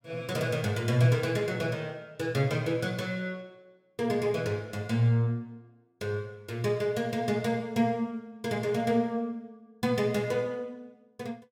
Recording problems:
none

